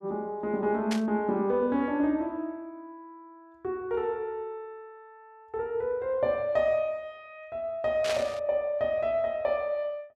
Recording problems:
burst of static; at 1 s and at 8 s; peak 0 dB vs average level

